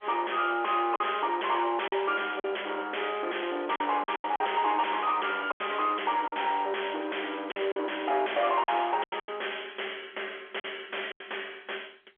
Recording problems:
phone line; 300 Hz to 3.3 kHz, G.711
distorted audio; soft clipping, signal-to-distortion ratio 5 dB
lost packets; 7% of the sound replaced, filled with silence

